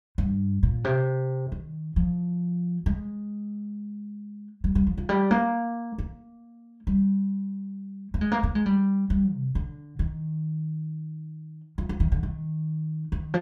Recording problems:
none

